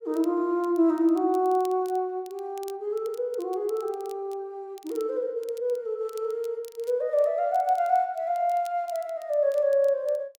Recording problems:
crackle; vinyl, SNR 27 dB

